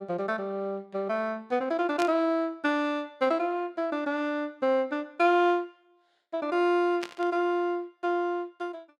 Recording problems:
burst of static; at 2 s and at 7 s; peak -4 dB vs average level

